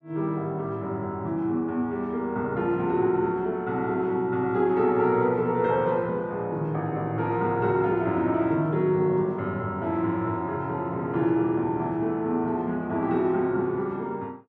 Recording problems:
none

